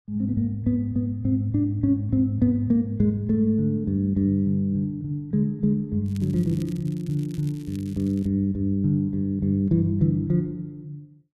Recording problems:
crackle; from 6 to 8.5 s; loose cable, SNR 27 dB

